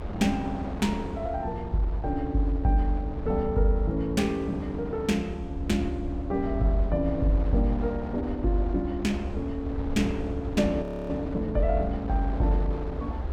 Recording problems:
low-frequency rumble; below 76 Hz, SNR 9 dB
wind noise; below 800 Hz, SNR 13 dB
audio freezing; at 11 s

